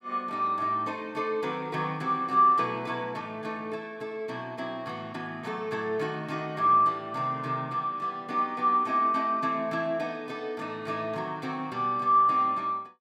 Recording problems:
none

